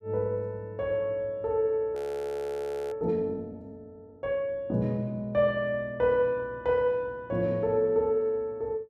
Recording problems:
frozen audio; at 2 s for 1 s

